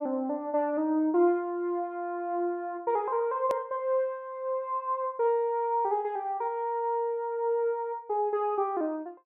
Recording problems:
hard cut with a click; at 3.5 s

